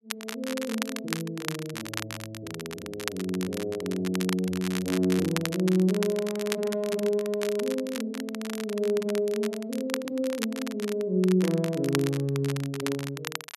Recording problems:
crackle; vinyl, SNR 9 dB

